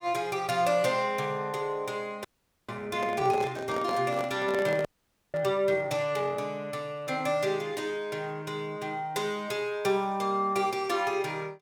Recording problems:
frozen audio; at 2.5 s and at 5 s
handling noise; from 3 to 5.5 s; peak -2 dB vs average level

